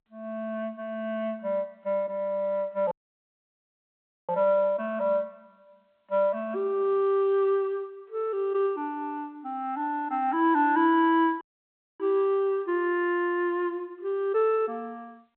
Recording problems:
telephone audio; 260 Hz to 3.5 kHz, G.711
dropout; at 3 s for 1.5 s and at 11 s for 0.5 s

